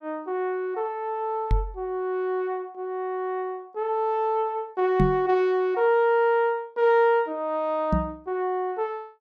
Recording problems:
knock on the microphone; at 1.5 s, at 5 s and at 8 s; peak +6 dB vs average level

